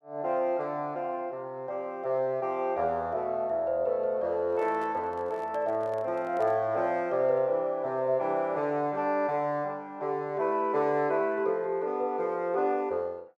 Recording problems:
handling noise; from 4.5 to 6.5 s; peak -10 dB vs average level

